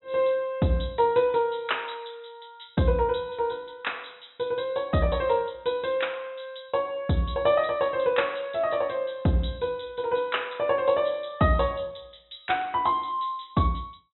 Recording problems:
low-pass filter; nothing above 3.9 kHz

